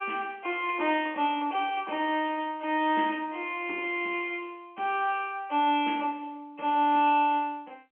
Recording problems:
phone line; 240 Hz to 3.4 kHz, G.711

